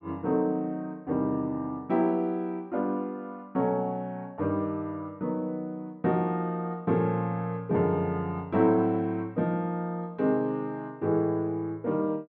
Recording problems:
none

